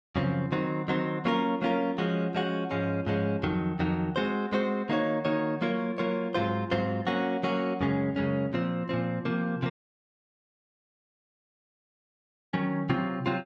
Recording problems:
dropout; at 9.5 s for 3 s

